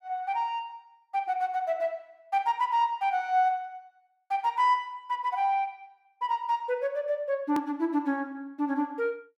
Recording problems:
click at an edit; at 7.5 s

